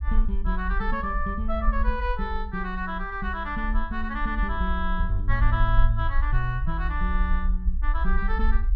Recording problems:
treble cut off; nothing above 8 kHz
rumble; below 50 Hz, SNR -1 dB

